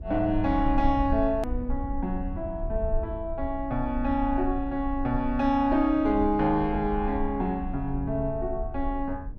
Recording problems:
low-frequency rumble; below 58 Hz, SNR 9 dB
click at an edit; at 1.5 s

